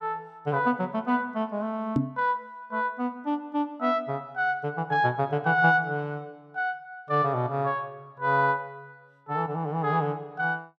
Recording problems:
knock on the microphone; at 2 s; peak +6 dB vs average level

